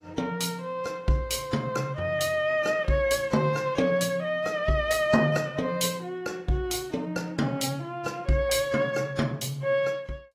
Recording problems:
lossy compression; AAC, log-spectral distance 2 dB, nothing above 15.1 kHz

